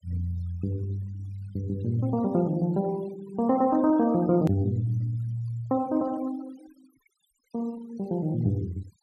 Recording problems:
denoising artefacts; signal-to-artefact ratio 24 dB
edit click; at 4.5 s

